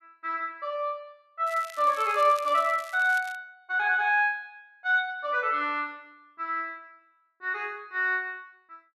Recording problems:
crackle; from 1.5 to 3.5 s; loose cable, SNR 20 dB

